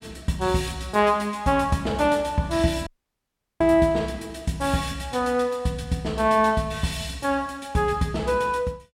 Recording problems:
dropout; at 3 s for 0.5 s

